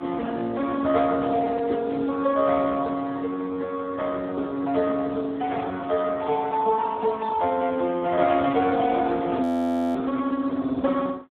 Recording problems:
phone line; 170 Hz to 2.1 kHz, Speex
audio freezing; at 9.5 s for 0.5 s

